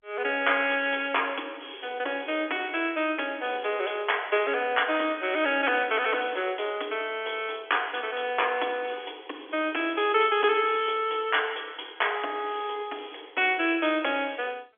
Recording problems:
telephone audio; 280 Hz to 3.4 kHz, G.711

